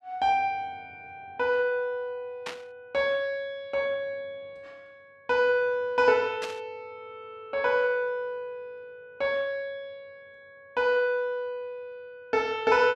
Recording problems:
burst of static; at 2.5 s and at 6.5 s; peak -4 dB vs average level

